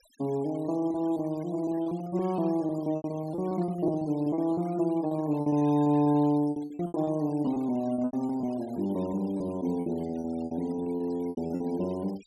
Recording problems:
noise reduction artefacts; signal-to-artefact ratio 24 dB
lost packets; 17% of the sound replaced, filled with repeated pitch periods

